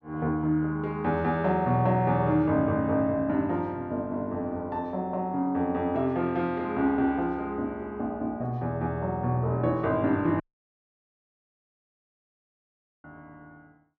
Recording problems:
audio cutting out; at 10 s for 2.5 s

